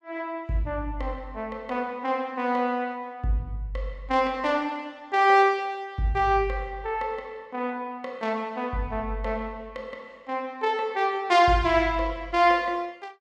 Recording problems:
none

